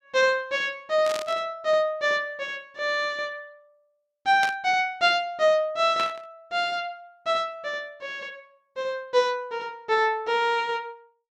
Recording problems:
burst of static; at 1 s, at 4.5 s and at 6 s; peak -2 dB vs average level

